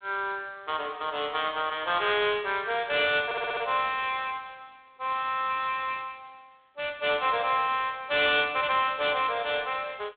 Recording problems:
telephone audio; 340 Hz to 3.7 kHz, G.726
audio stuttering; at 3.5 s

